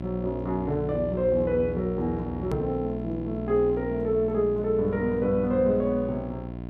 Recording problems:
hum; 60 Hz, harmonics up to 1 kHz, SNR 9 dB
hard cut with a click; at 2.5 s

